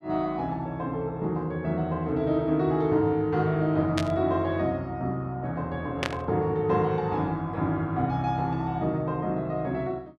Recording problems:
burst of static; at 4 s and at 6 s; peak +2 dB vs average level

